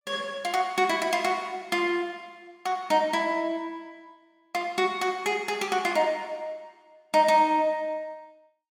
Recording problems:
none

